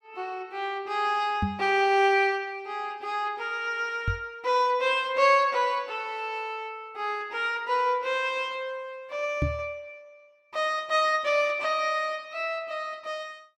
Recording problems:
knock on the microphone; at 1.5 s, at 4 s and at 9.5 s; peak +3 dB vs average level

